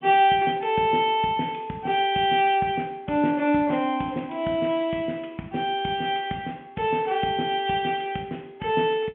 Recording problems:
telephone audio; 150 Hz to 3.4 kHz, G.711

